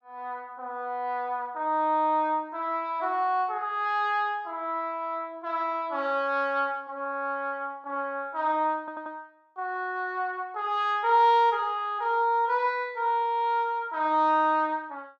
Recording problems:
audio stuttering; at 9 s

